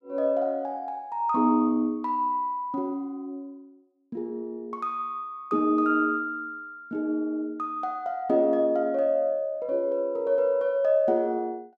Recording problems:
none

